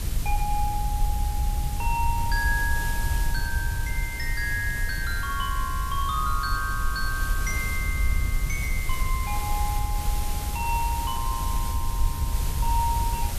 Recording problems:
background hiss; slope -2 dB per octave, SNR 6 dB
wind noise; below 70 Hz, SNR 0 dB

